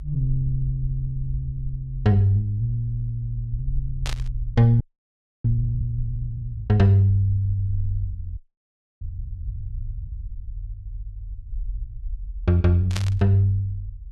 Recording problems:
rumble; below 56 Hz, SNR 12 dB
burst of static; at 4 s and at 13 s; peak -3 dB vs average level
audio freezing; at 5 s for 0.5 s and at 8.5 s for 0.5 s

